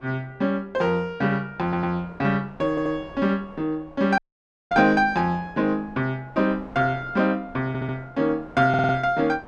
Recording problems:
wind noise; below 840 Hz, SNR 22 dB
audio stuttering; 4 times, first at 1.5 s
dropout; at 4 s for 0.5 s

